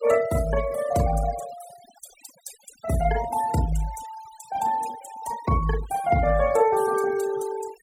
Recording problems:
noise reduction artefacts; signal-to-artefact ratio 16 dB

